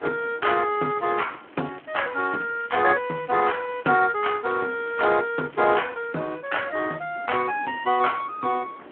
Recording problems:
phone line; 240 Hz to 3.3 kHz, Speex
wind noise; below 1 kHz, SNR 23 dB
crackle; from 1 to 3 s, from 3 to 5 s and from 5.5 to 7 s; loose cable, SNR 26 dB

